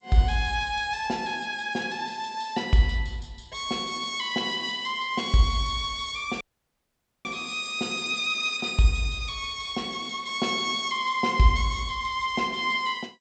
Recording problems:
codec artefacts; G.722, log-spectral distance 4 dB, nothing above 7.6 kHz
dropout; at 6.5 s for 1 s

